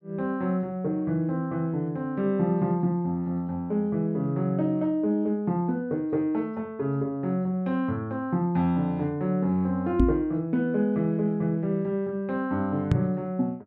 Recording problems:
microphone bump; at 10 s and at 13 s; peak +8 dB vs average level

